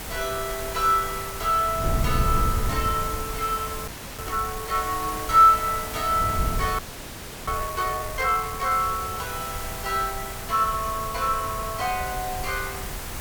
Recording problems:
background hiss; slope -3 dB per octave, SNR 9 dB
wind on the microphone; below 120 Hz, SNR 10 dB
audio freezing; at 4 s and at 7 s for 0.5 s

